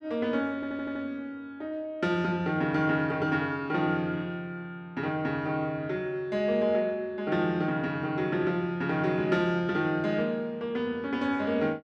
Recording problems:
audio stuttering; at 0.5 s

